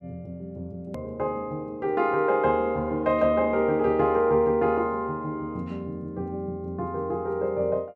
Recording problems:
hard cut with a click; at 1 s

